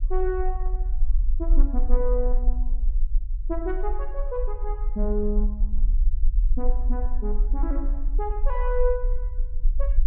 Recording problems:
low-frequency rumble; below 40 Hz, strongest tone 22 Hz, SNR -4 dB

